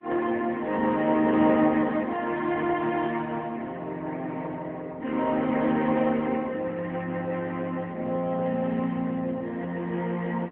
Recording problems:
telephone audio; 190 Hz to 3.4 kHz, AMR-NB

